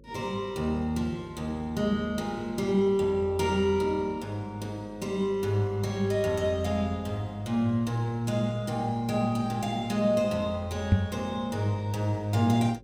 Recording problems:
hum; 50 Hz, harmonics up to 550 Hz, SNR 24 dB
knock on the microphone; at 11 s; peak +9 dB vs average level

